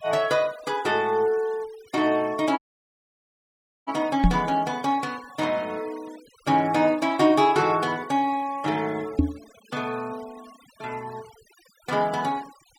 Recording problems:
denoising artefacts; signal-to-artefact ratio 22 dB
audio cutting out; at 2.5 s for 1.5 s
microphone bump; at 4 s and at 9 s; peak +8 dB vs average level

